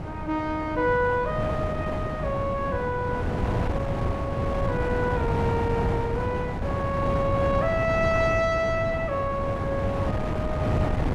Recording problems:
wind noise; below 490 Hz, SNR 1 dB

